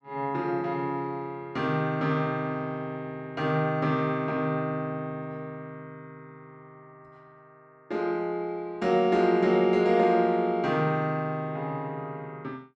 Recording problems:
none

